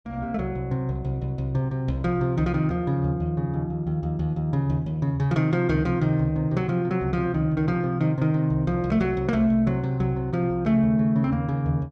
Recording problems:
none

